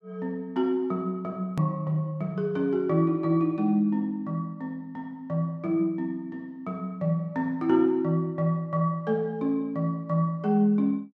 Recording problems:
hard cut with a click; at 1.5 s

